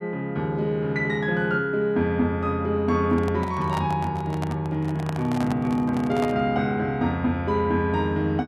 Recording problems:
handling noise; from 3 to 6.5 s; peak -4 dB vs average level

